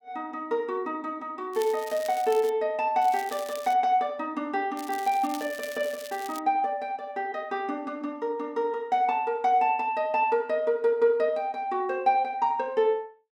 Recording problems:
crackle; at 1.5 s, at 3 s and from 5 to 6.5 s; loose cable, SNR 17 dB

